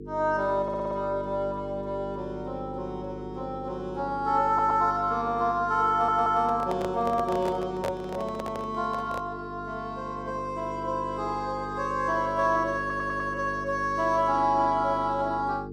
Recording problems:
electrical hum; 50 Hz, harmonics up to 450 Hz, SNR 12 dB
audio stuttering; 4 times, first at 0.5 s
handling noise; from 6 to 9.5 s; peak -2 dB vs average level

